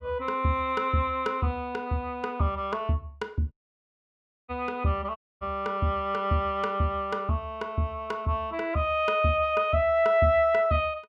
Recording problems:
dropout; at 3.5 s for 1 s and at 5 s

